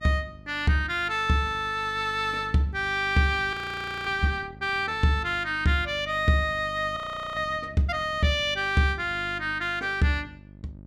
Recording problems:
hum; 50 Hz, harmonics up to 650 Hz, SNR 19 dB
audio freezing; at 3.5 s for 0.5 s and at 7 s

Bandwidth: 14.5 kHz